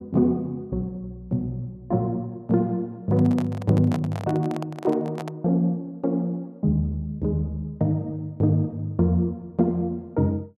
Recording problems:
microphone handling noise; from 3 to 5.5 s; peak -4 dB vs average level

